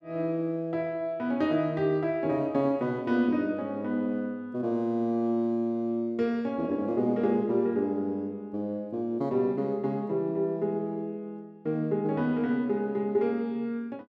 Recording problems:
none

